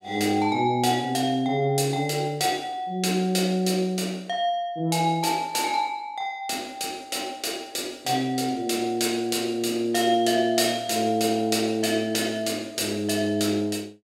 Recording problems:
none

